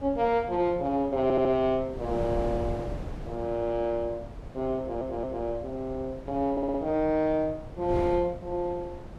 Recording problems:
wind on the microphone; below 360 Hz, SNR 12 dB
stutter; at 1 s, at 5 s and at 6.5 s

